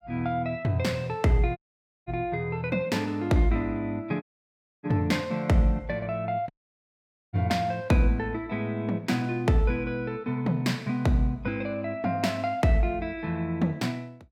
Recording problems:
audio cutting out; at 1.5 s, at 4 s for 0.5 s and at 6.5 s for 1 s

